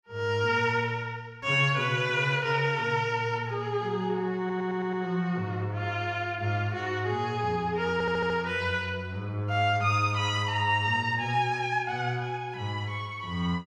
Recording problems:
stutter; at 4.5 s and at 8 s

